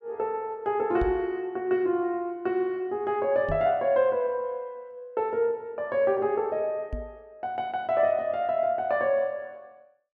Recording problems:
microphone bump; at 1 s, at 3.5 s and at 7 s; peak -2 dB vs average level

